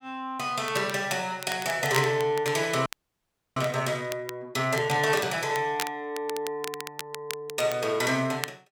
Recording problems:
crackle; vinyl, SNR 12 dB
audio freezing; at 3 s for 0.5 s

